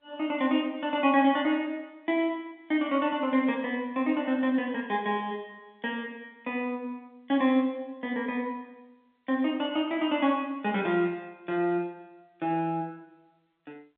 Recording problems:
phone line; 220 Hz to 3.6 kHz, G.711

